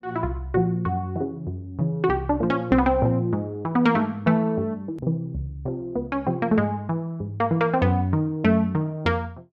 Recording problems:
edit click; at 5 s

